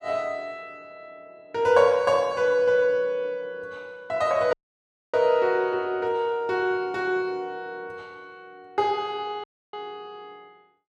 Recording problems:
audio cutting out; at 4.5 s for 0.5 s and at 9.5 s

